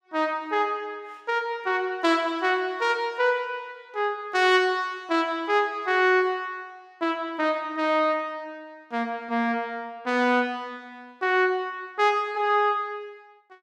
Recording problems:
none

